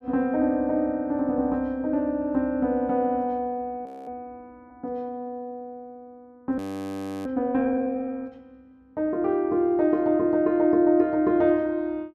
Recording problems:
frozen audio; at 4 s and at 6.5 s for 0.5 s

